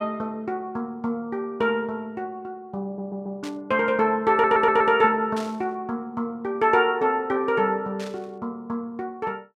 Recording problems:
audio stuttering; at 3 s and at 4.5 s
burst of static; at 3.5 s, at 5.5 s and at 8 s; peak -9 dB vs average level

